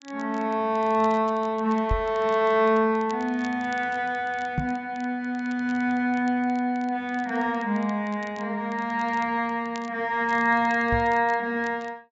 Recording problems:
treble missing; nothing above 8 kHz
crackling; vinyl, SNR 27 dB
knock on the microphone; at 2 s, at 4.5 s and at 11 s; peak +2 dB vs average level

